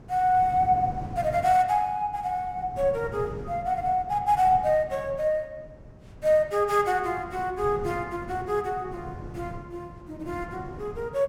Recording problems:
wind noise; below 280 Hz, SNR 16 dB

